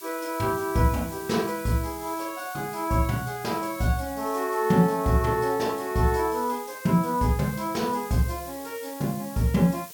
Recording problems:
hiss; slope +2 dB per octave, SNR 16 dB

